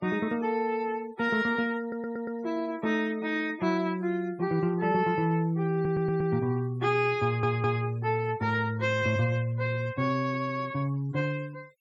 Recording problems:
noise reduction artefacts; signal-to-artefact ratio 24 dB
audio stuttering; at 2 s, at 5.5 s and at 7 s

